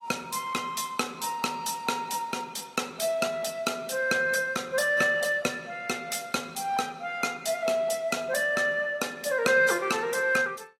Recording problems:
codec artefacts; AAC, log-spectral distance 4 dB

